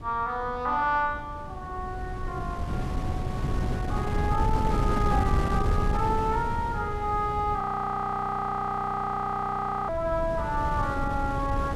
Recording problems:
wind noise; below 200 Hz, SNR 3 dB
frozen audio; at 7.5 s for 2.5 s

